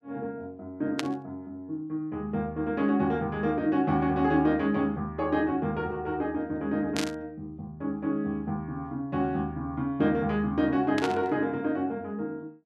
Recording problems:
burst of static; at 1 s, at 7 s and at 11 s; peak +2 dB vs average level

